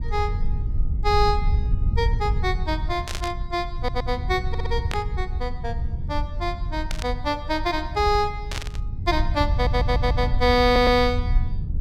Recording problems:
low-frequency rumble; below 84 Hz, SNR 3 dB
static burst; 4 times, first at 3 s; peak -1 dB vs average level
audio stuttering; 4 times, first at 4 s

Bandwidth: 17 kHz